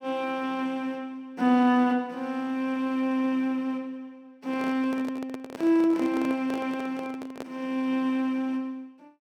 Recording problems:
handling noise; from 4.5 to 7.5 s; peak -6 dB vs average level

